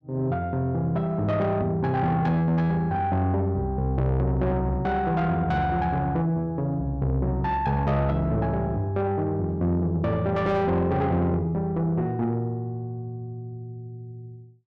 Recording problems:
distortion; soft clipping, signal-to-distortion ratio 10 dB

